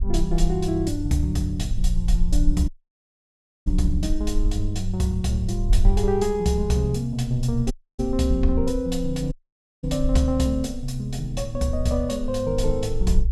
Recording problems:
low-frequency rumble; below 46 Hz, strongest tone 20 Hz, SNR 5 dB
dropout; at 2.5 s for 1 s, at 7.5 s and at 9.5 s for 0.5 s

